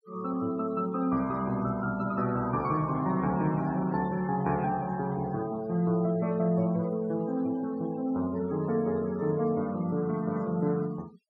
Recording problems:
denoising artefacts; signal-to-artefact ratio 21 dB

